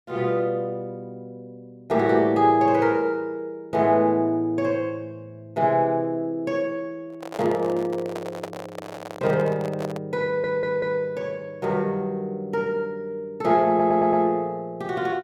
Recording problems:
microphone handling noise; from 7 to 10 s; peak -5 dB vs average level
stutter; at 10 s and at 14 s

